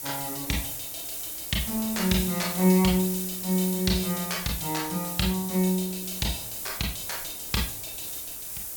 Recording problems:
background hiss; slope +3 dB per octave, SNR 4 dB
wind noise; below 710 Hz, SNR 25 dB

